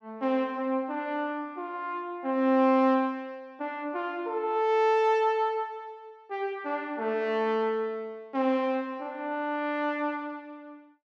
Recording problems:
none

